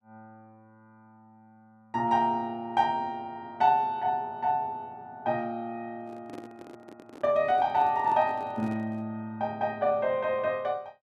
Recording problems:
handling noise; from 6 to 9 s; peak -11 dB vs average level

